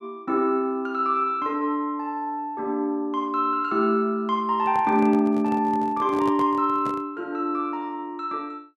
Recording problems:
handling noise; from 4.5 to 7 s; peak -7 dB vs average level

